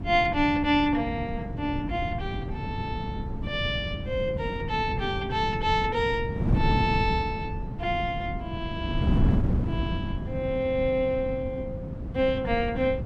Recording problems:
wind on the microphone; below 210 Hz, SNR 3 dB

